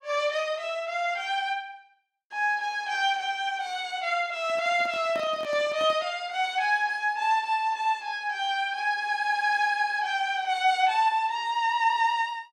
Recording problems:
handling noise; from 4.5 to 6 s; peak -11 dB vs average level

